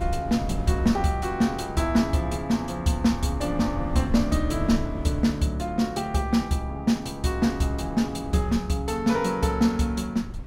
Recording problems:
wind on the microphone; below 110 Hz, SNR 12 dB

